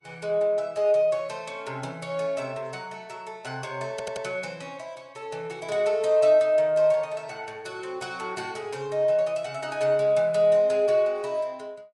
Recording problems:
lossy compression; Vorbis, log-spectral distance 2 dB, nothing above 10.7 kHz
stutter; at 4 s

